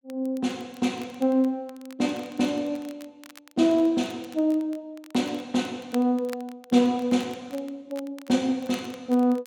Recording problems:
crackling; vinyl, SNR 24 dB

